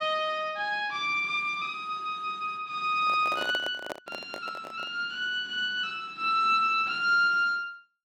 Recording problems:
microphone handling noise; from 3 to 5 s; peak -4 dB vs average level

